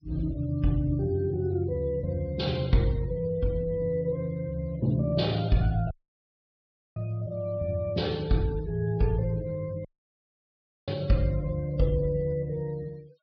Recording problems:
treble missing; nothing above 5.5 kHz
noise reduction artefacts; signal-to-artefact ratio 26 dB
audio cutting out; at 6 s for 1 s and at 10 s for 1 s

